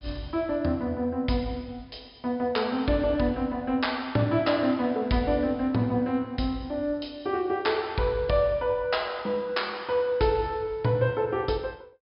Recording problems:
treble missing; nothing above 5.5 kHz

